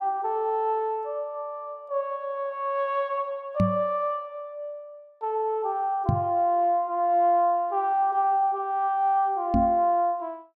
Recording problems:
microphone thump; at 3.5 s, at 6 s and at 9.5 s; peak +6 dB vs average level

